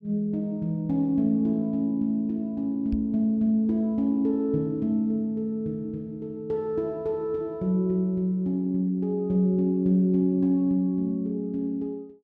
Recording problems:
microphone bump; at 3 s; peak -3 dB vs average level

